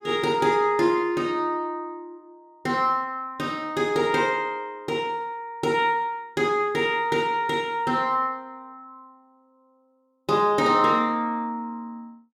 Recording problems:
none

